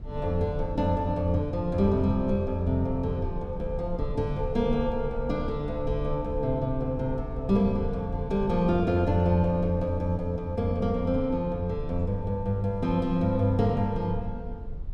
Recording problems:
low-frequency rumble; below 68 Hz, SNR 11 dB

